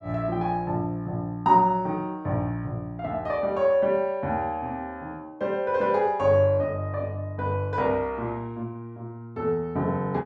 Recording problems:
none

